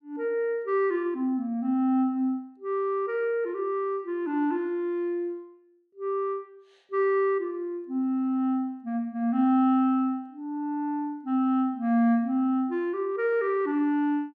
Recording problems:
none

